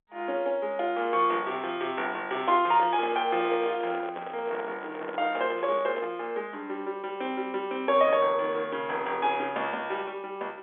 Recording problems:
telephone audio; 300 Hz to 3.5 kHz, G.711
handling noise; from 2.5 to 6 s; peak -6 dB vs average level

